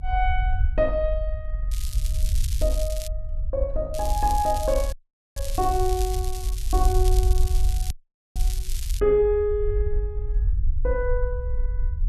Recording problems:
rumble; below 58 Hz, SNR 1 dB
crackle; from 1.5 to 3 s and from 4 to 9 s; loose cable, SNR 12 dB
dropout; at 5 s and at 8 s

